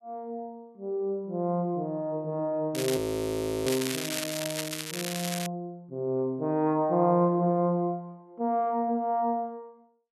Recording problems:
crackling; from 2.5 to 5.5 s; loose cable, SNR 5 dB
frozen audio; at 3 s for 0.5 s

